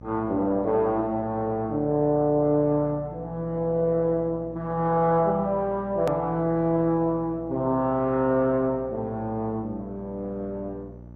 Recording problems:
lossy compression; MP2, log-spectral distance 2 dB, nothing above 13.1 kHz
hum; 60 Hz, harmonics up to 900 Hz, SNR 19 dB
hard cut with a click; at 6 s

